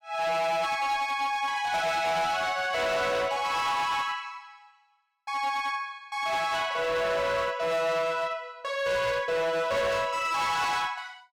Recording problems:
distorted audio; hard clipping, signal-to-distortion ratio 10 dB

